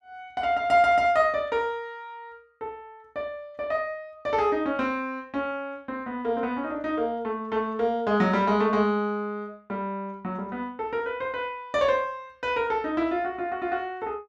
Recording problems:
none

